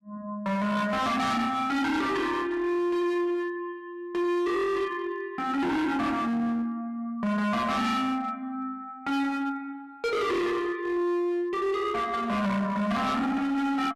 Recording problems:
distorted audio; hard clipping, uneven, signal-to-distortion ratio 7 dB

